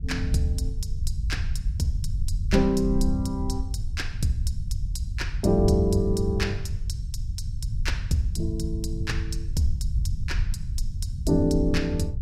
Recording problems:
rumble; below 86 Hz, SNR 3 dB

